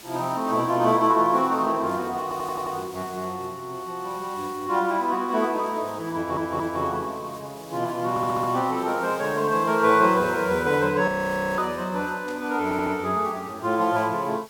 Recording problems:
background hiss; slope -1 dB per octave, SNR 21 dB
audio stuttering; 4 times, first at 2 s
frozen audio; at 11 s for 0.5 s
burst of static; at 12 s; peak -16 dB vs average level

